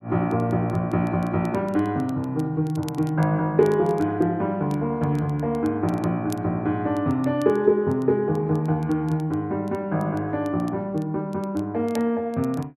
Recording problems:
crackle; vinyl, SNR 27 dB

